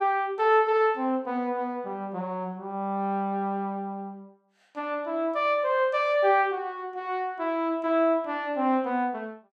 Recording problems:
none

